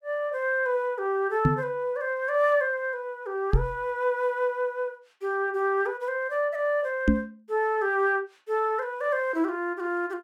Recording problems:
microphone bump; at 1.5 s, at 3.5 s and at 7 s; peak +9 dB vs average level

